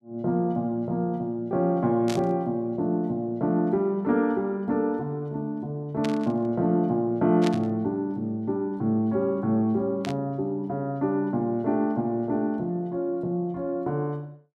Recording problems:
static burst; 4 times, first at 2 s; peak -3 dB vs average level

